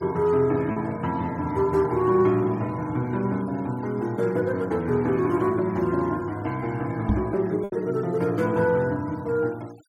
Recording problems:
noise reduction artefacts; signal-to-artefact ratio 25 dB
lost packets; 1.2% of the sound replaced, filled with repeated pitch periods
knock on the microphone; at 7 s; peak +4 dB vs average level

